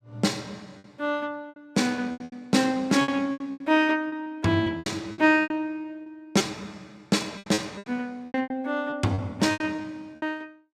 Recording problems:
lost packets; 15% of the sound replaced, filled with repeated pitch periods

